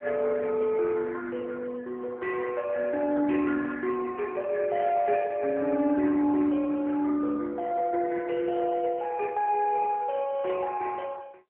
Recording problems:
telephone audio; 260 Hz to 2.4 kHz, AMR-NB

